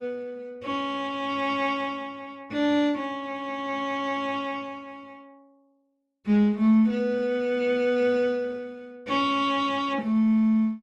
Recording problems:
lossy compression; Opus, log-spectral distance 2 dB, nothing above 11.6 kHz

